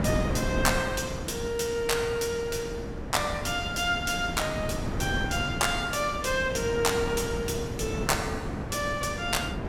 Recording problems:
wind on the microphone; below 380 Hz, SNR 5 dB

